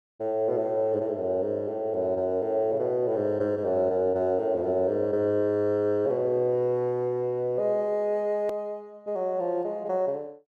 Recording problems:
hard cut with a click; at 8.5 s

